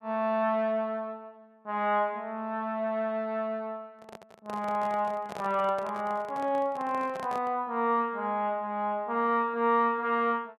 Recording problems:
handling noise; from 4 to 7.5 s; peak -7 dB vs average level

